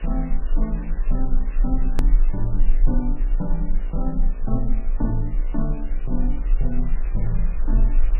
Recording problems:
codec artefacts; MP3, log-spectral distance 2 dB, nothing above 13.1 kHz
hum; 60 Hz, harmonics up to 1.4 kHz, SNR 17 dB
hiss; SNR 17 dB
rumble; below 34 Hz, strongest tone 18 Hz, SNR -4 dB
click at an edit; at 2 s

